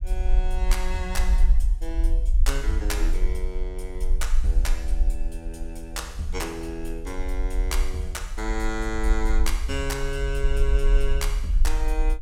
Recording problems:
rumble; below 48 Hz, SNR -5 dB

